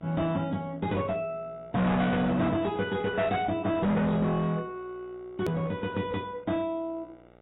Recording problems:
codec artefacts; AAC, log-spectral distance 2 dB, nothing above 18.3 kHz
distorted audio; hard clipping, uneven, signal-to-distortion ratio 6 dB
hum; 60 Hz, harmonics up to 2.9 kHz, SNR 25 dB
hard cut with a click; at 5.5 s

